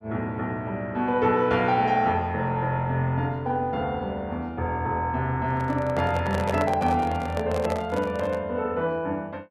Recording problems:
microphone handling noise; from 5.5 to 8.5 s; peak 0 dB vs average level

